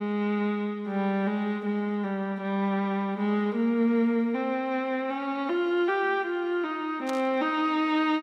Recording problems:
static burst; at 7 s; peak -8 dB vs average level

